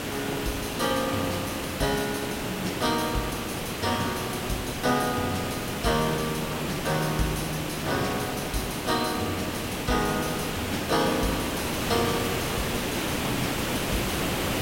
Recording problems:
hiss; SNR 1 dB

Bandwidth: 16 kHz